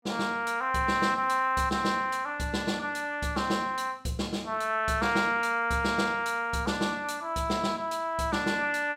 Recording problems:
none

